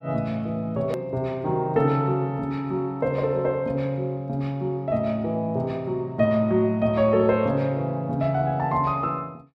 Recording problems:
edit click; at 1 s

